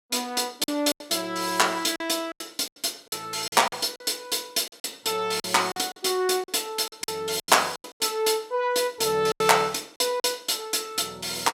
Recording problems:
lost packets; 10% of the sound replaced, filled with silence

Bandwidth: 16.5 kHz